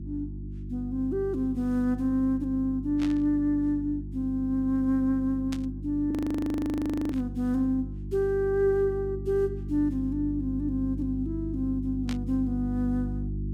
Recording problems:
electrical hum; 50 Hz, harmonics up to 350 Hz, SNR 9 dB
burst of static; 4 times, first at 3 s; peak -7 dB vs average level
audio freezing; at 6 s for 1 s

